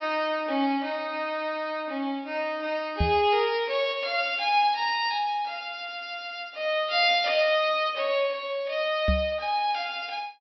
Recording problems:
treble cut off; nothing above 5.7 kHz
knock on the microphone; at 3 s and at 9 s; peak +4 dB vs average level

